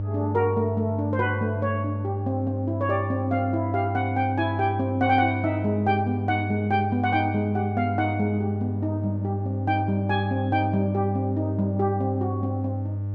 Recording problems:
electrical hum; 50 Hz, harmonics up to 600 Hz, SNR 4 dB

